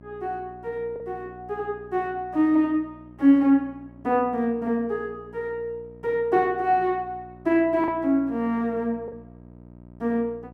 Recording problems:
hum; 60 Hz, harmonics up to 1 kHz, SNR 23 dB
packet loss; 1.3% of the sound replaced, filled with the last packet

